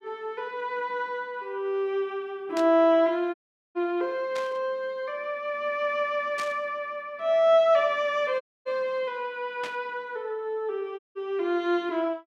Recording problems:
static burst; 4 times, first at 2.5 s; peak -6 dB vs average level
dropout; at 3.5 s, at 8.5 s and at 11 s

